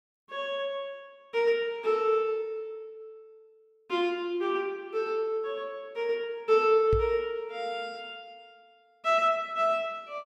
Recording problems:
microphone thump; at 7 s; peak +1 dB vs average level

